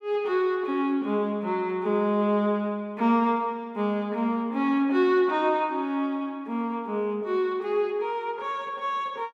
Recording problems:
none

